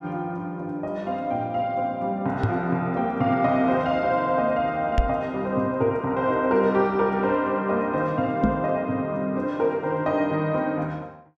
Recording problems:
knock on the microphone; at 2.5 s, at 5 s and at 8.5 s; peak +6 dB vs average level

